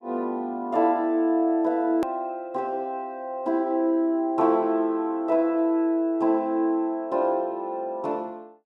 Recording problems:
edit click; at 2 s

